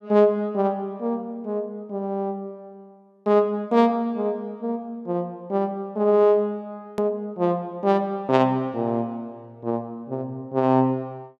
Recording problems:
edit click; at 7 s

